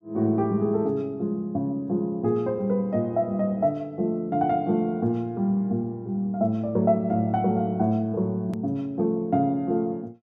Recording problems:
edit click; at 8.5 s

